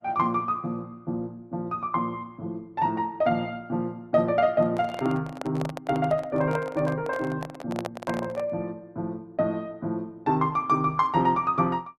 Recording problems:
codec artefacts; Opus, log-spectral distance 2 dB
microphone handling noise; from 4.5 to 8.5 s; peak -1 dB vs average level

